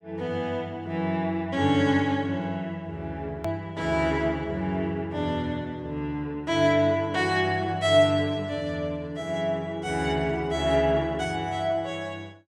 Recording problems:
click at an edit; at 3.5 s

